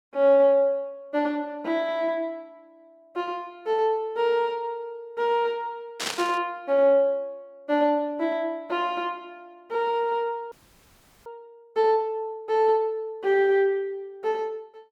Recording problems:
static burst; at 6 s; peak +1 dB vs average level
audio freezing; at 11 s for 0.5 s

